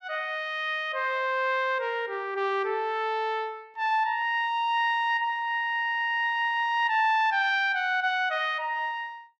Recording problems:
none

